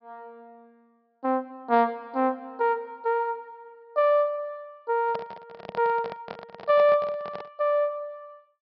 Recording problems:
low-pass filter; nothing above 5.5 kHz
handling noise; from 5 to 7.5 s; peak -6 dB vs average level

